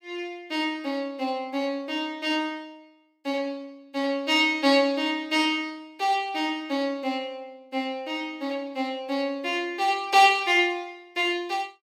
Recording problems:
none

